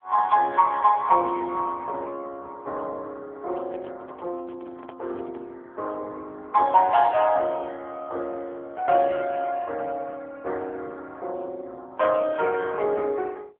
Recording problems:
phone line; 320 Hz to 3.3 kHz, AMR-NB
handling noise; from 3.5 to 5.5 s; peak -18 dB vs average level

